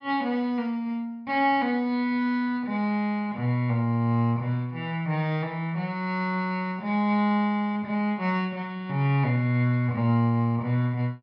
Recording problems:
treble cut off; nothing above 5.5 kHz

